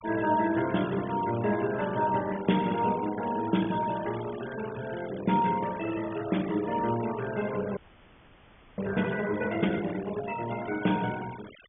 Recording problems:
treble missing; nothing above 3.5 kHz
noise reduction artefacts; signal-to-artefact ratio 15 dB
audio freezing; at 8 s for 1 s

